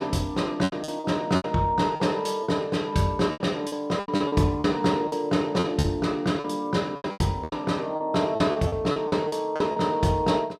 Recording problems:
lost packets; 13% of the sound replaced, filled with repeated pitch periods

